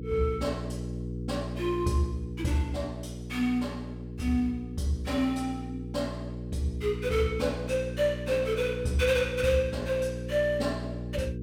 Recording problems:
hum; 60 Hz, harmonics up to 480 Hz, SNR 7 dB

